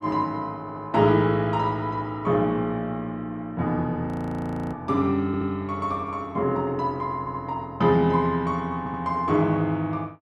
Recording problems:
audio stuttering; 4 times, first at 0.5 s
audio freezing; at 4 s for 0.5 s

